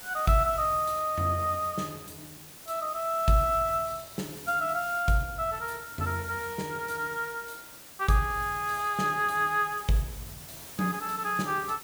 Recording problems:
hiss; slope -1 dB per octave, SNR 14 dB

